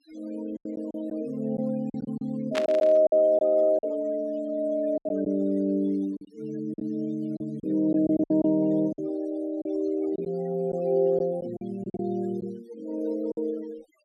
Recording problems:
denoising artefacts; signal-to-artefact ratio 24 dB
packet loss; 8% of the sound replaced, filled with silence
static burst; at 2.5 s; peak 0 dB vs average level

